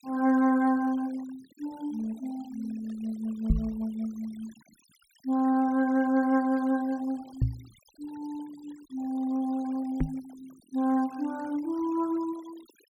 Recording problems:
noise reduction artefacts; signal-to-artefact ratio 24 dB
microphone thump; at 3.5 s, at 7.5 s and at 10 s; peak +7 dB vs average level

